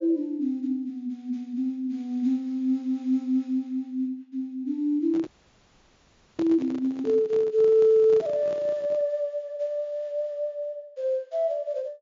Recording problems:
low-pass filter; nothing above 7.2 kHz
handling noise; from 5 to 9 s; peak -7 dB vs average level
audio cutting out; at 5.5 s for 1 s

